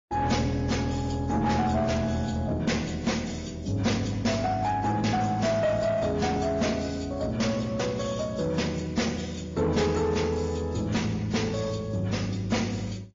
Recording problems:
lossy codec; MP3, then AAC, log-spectral distance 4 dB, nothing above 6.7 kHz
distortion; soft clipping, signal-to-distortion ratio 12 dB

